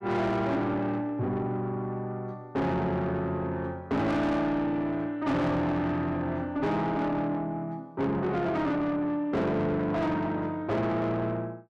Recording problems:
distortion; soft clipping, signal-to-distortion ratio 8 dB

